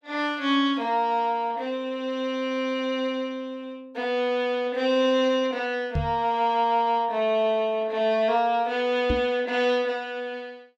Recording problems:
microphone bump; at 6 s and at 9 s; peak +2 dB vs average level

